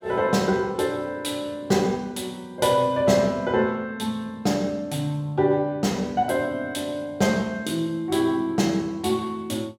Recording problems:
none

